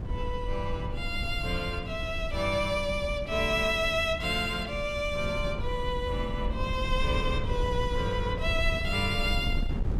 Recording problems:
electrical hum; 60 Hz, harmonics up to 360 Hz, SNR 18 dB
wind noise; below 94 Hz, SNR 6 dB

